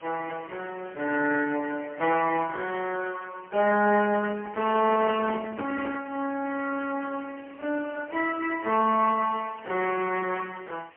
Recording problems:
telephone audio; 240 Hz to 2.8 kHz, AMR-NB, then MP3
hiss; SNR 24 dB
handling noise; from 4.5 to 6 s; peak -2 dB vs average level

